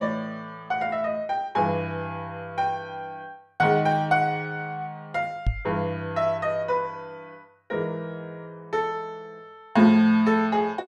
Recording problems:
knock on the microphone; at 5.5 s; peak +3 dB vs average level

